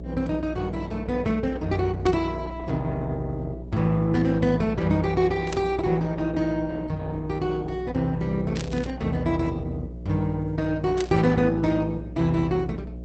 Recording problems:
codec artefacts; Opus, log-spectral distance 3 dB, nothing above 8.2 kHz
hum; 60 Hz, harmonics up to 660 Hz, SNR 12 dB
static burst; 4 times, first at 2 s; peak -4 dB vs average level

